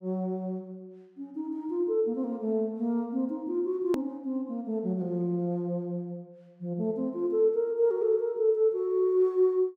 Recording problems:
edit click; at 4 s

